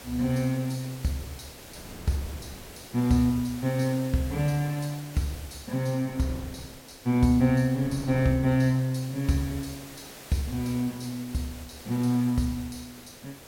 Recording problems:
background hiss; slope -3 dB per octave, SNR 17 dB
wind noise; below 410 Hz, SNR 22 dB

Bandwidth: 16.5 kHz